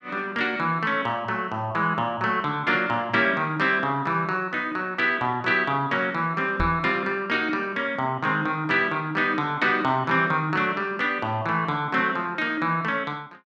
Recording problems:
microphone bump; at 6.5 s; peak -2 dB vs average level

